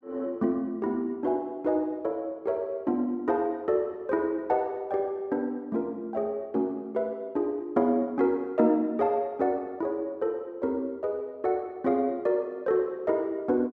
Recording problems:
none

